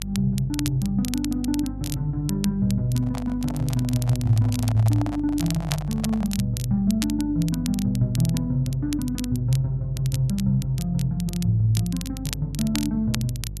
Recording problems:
hum; 50 Hz, harmonics up to 350 Hz, SNR 11 dB
crackle; vinyl, SNR 13 dB
microphone handling noise; from 3 to 6.5 s; peak -6 dB vs average level

